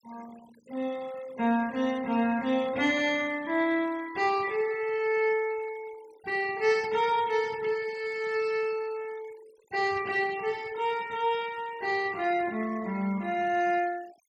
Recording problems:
noise reduction artefacts; signal-to-artefact ratio 21 dB

